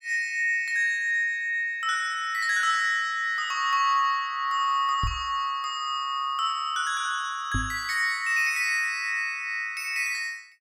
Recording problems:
microphone bump; at 5 s and at 7.5 s; peak -1 dB vs average level

